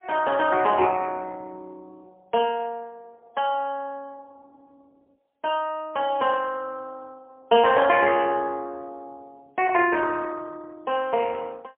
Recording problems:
telephone audio; 260 Hz to 3.3 kHz, AMR-NB, then MP3

